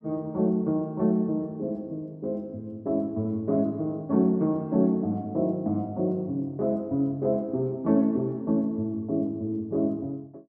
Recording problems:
none

